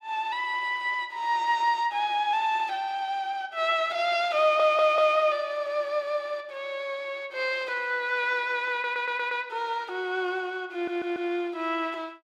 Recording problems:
stutter; at 4.5 s, at 8.5 s and at 11 s

